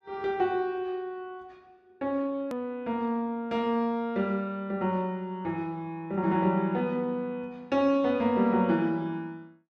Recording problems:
edit click; at 2.5 s

